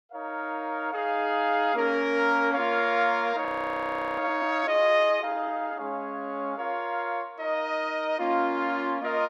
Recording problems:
frozen audio; at 3.5 s for 0.5 s

